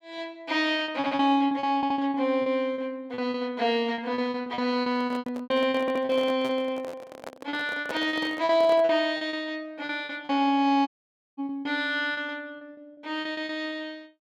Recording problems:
lost packets; 14% of the sound replaced, filled with repeated pitch periods
audio stuttering; at 1 s, at 2 s and at 6 s
handling noise; from 5 to 9 s; peak -4 dB vs average level
audio cutting out; at 11 s for 0.5 s

